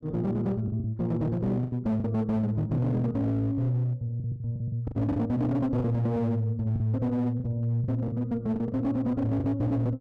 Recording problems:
distorted audio; hard clipping, uneven, signal-to-distortion ratio 11 dB
packet loss; 8% of the sound replaced, filled with the last packet

